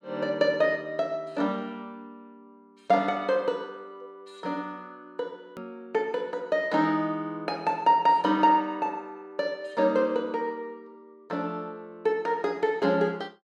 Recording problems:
hard cut with a click; at 5.5 s

